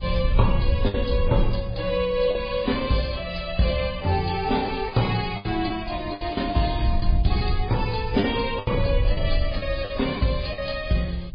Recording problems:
lossy compression; AAC, then MP3, log-spectral distance 5 dB, nothing above 4.8 kHz
wind noise; below 74 Hz, SNR 5 dB
packet loss; 7% of the sound replaced, filled with the last packet

